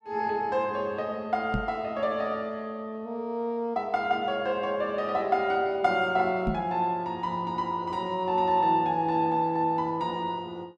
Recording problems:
microphone bump; at 1.5 s and at 6.5 s; peak +2 dB vs average level

